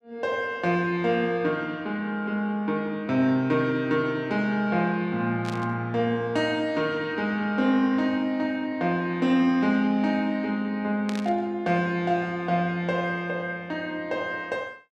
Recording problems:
static burst; at 5.5 s and at 11 s; peak -7 dB vs average level

